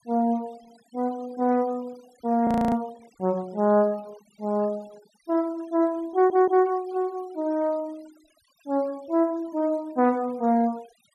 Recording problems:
noise reduction artefacts; signal-to-artefact ratio 27 dB
audio freezing; at 2.5 s
audio stuttering; at 6 s

